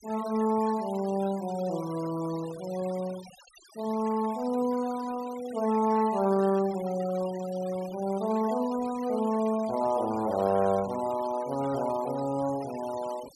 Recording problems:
noise reduction artefacts; signal-to-artefact ratio 18 dB

